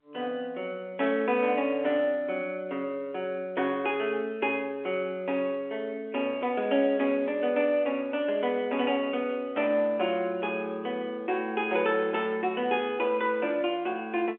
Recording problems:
phone line; 240 Hz to 3.4 kHz, G.711

